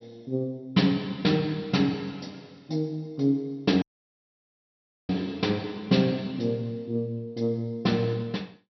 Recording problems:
low-pass filter; nothing above 5.8 kHz
audio cutting out; at 4 s for 1.5 s

